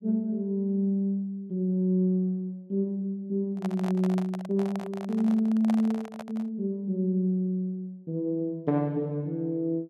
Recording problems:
microphone handling noise; from 3.5 to 6.5 s; peak -4 dB vs average level

